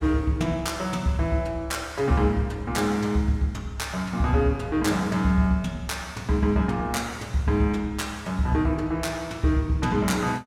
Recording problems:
none

